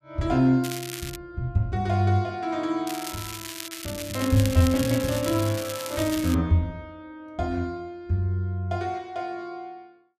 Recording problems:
crackling; at 0.5 s and from 3 to 6.5 s; loose cable, SNR 10 dB

